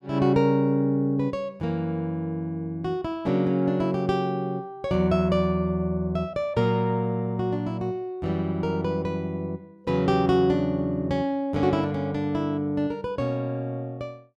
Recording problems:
none

